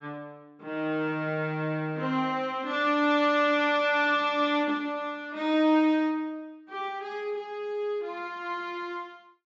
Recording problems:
treble cut off; nothing above 8 kHz

